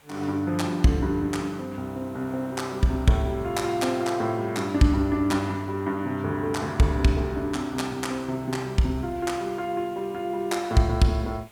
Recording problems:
background hiss; SNR 27 dB

